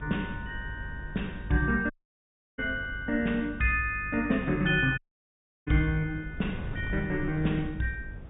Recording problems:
low-pass filter; nothing above 3.7 kHz
electrical hum; 50 Hz, harmonics up to 500 Hz, SNR 16 dB
wind on the microphone; below 130 Hz, SNR 14 dB
audio cutting out; at 2 s for 0.5 s and at 5 s for 0.5 s

